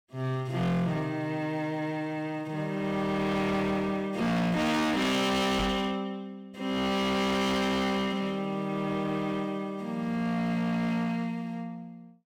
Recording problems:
distortion; hard clipping, signal-to-distortion ratio 7 dB
knock on the microphone; at 5.5 s; peak +2 dB vs average level

